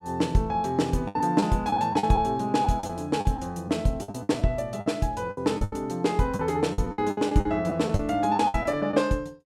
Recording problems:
lost packets; 12% of the sound replaced, filled with the last packet

